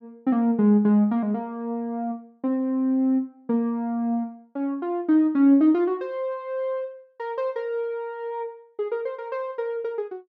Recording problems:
none

